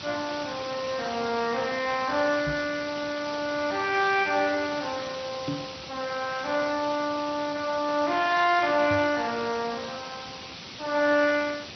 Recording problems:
lossy compression; Speex, then MP2, log-spectral distance 19 dB, nothing above 5 kHz
hiss; SNR 11 dB
microphone bump; at 2.5 s, at 5.5 s and at 9 s; peak -1 dB vs average level

